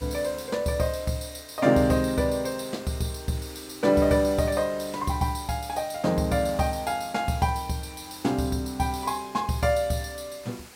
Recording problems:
hiss; slope -1 dB per octave, SNR 20 dB

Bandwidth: 16 kHz